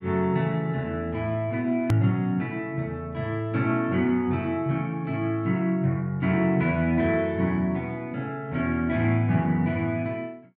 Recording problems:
click at an edit; at 2 s

